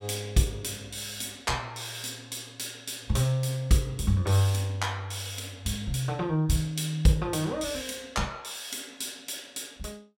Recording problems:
none

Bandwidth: 16.5 kHz